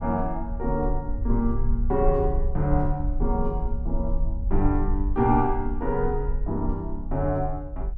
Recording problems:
rumble; below 52 Hz, SNR 4 dB

